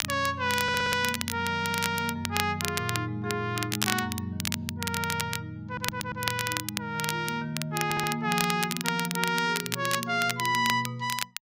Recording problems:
crackle; vinyl, SNR 4 dB
stutter; 4 times, first at 0.5 s

